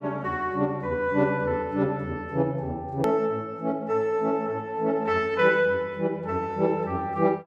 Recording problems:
edit click; at 3 s

